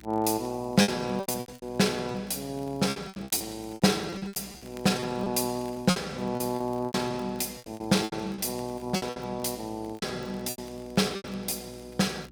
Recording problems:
hum; 60 Hz, harmonics up to 360 Hz, SNR 24 dB
crackle; vinyl, SNR 28 dB
lost packets; 15% of the sound replaced, filled with repeated pitch periods

